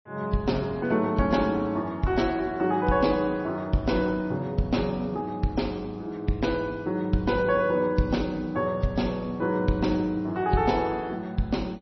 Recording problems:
codec artefacts; MP3, log-spectral distance 2 dB, nothing above 5.8 kHz

